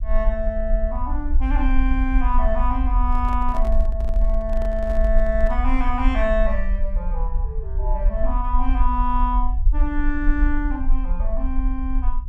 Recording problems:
rumble; below 46 Hz, SNR -2 dB
handling noise; from 3 to 5.5 s; peak -7 dB vs average level

